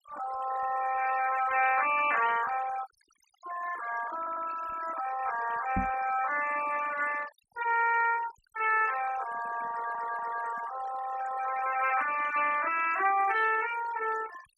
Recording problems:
denoising artefacts; signal-to-artefact ratio 12 dB
audio stuttering; at 4 s and at 9.5 s
microphone bump; at 6 s; peak +1 dB vs average level

